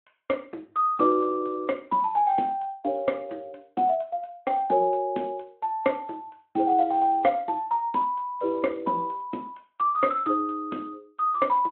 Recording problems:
telephone audio; 220 Hz to 3.6 kHz, Speex

